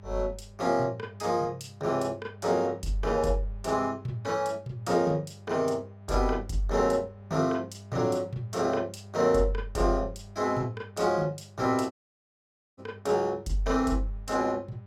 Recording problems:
mains hum; 50 Hz, harmonics up to 800 Hz, SNR 19 dB
audio cutting out; at 12 s for 1 s

